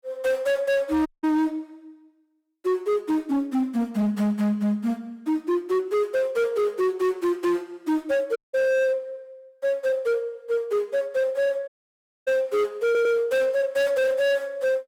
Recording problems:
distorted audio; hard clipping, signal-to-distortion ratio 8 dB
audio cutting out; at 1 s, at 8.5 s and at 12 s for 0.5 s
audio stuttering; at 13 s

